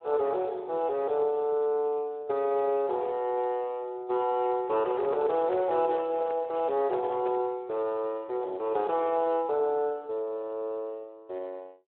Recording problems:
telephone audio; 340 Hz to 3.3 kHz, Speex
microphone handling noise; from 4.5 to 7.5 s; peak -4 dB vs average level

